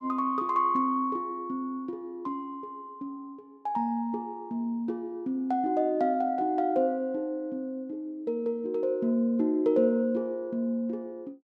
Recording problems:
none

